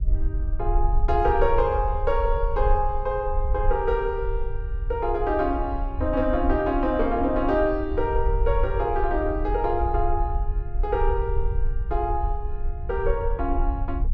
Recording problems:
low-frequency rumble; below 56 Hz, SNR 4 dB

